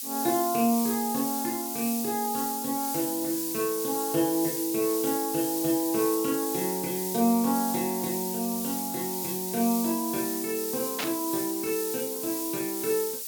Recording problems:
hiss; SNR 3 dB
static burst; at 11 s; peak +1 dB vs average level

